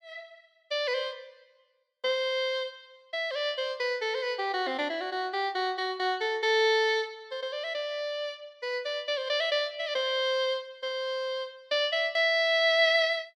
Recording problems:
none

